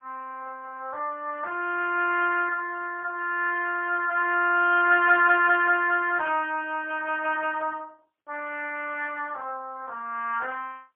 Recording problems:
phone line; 370 Hz to 3.1 kHz, AMR-NB, then MP3

